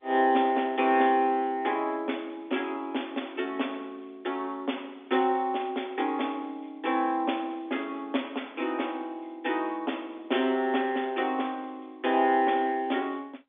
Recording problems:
telephone audio; 220 Hz to 3.6 kHz, G.711

